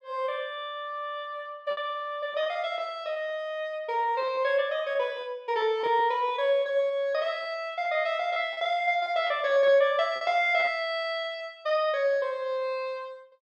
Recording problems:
packet loss; 6% of the sound replaced, filled with repeated pitch periods

